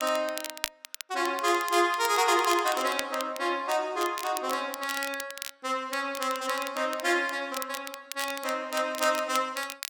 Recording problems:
crackle; vinyl, SNR 10 dB

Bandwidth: 17.5 kHz